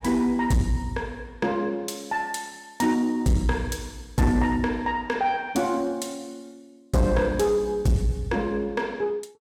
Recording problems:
distortion; soft clipping, signal-to-distortion ratio 11 dB

